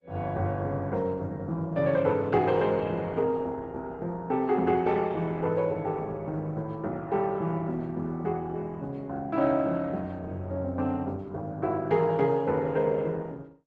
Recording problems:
lossy codec; Opus, log-spectral distance 2 dB

